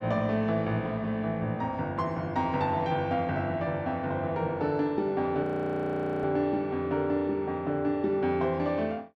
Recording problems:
audio freezing; at 5.5 s for 1 s

